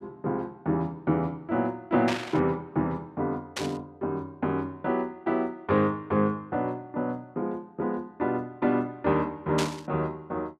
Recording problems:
static burst; at 2 s, at 3.5 s and at 9.5 s; peak +2 dB vs average level

